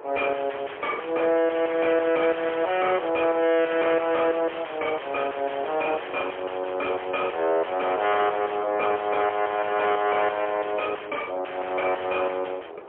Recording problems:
phone line; 300 Hz to 3.3 kHz, AMR-NB, then MP3
distorted audio; soft clipping, signal-to-distortion ratio 5 dB
wind noise; below 970 Hz, SNR 18 dB

